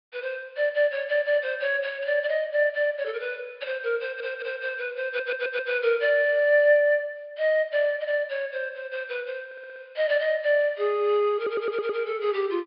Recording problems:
treble missing; nothing above 5.1 kHz
audio stuttering; 4 times, first at 4 s

